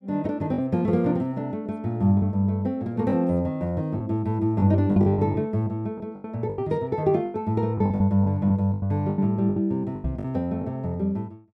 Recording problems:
packet loss; 9% of the sound replaced, filled with the last packet
microphone bump; at 10 s; peak 0 dB vs average level

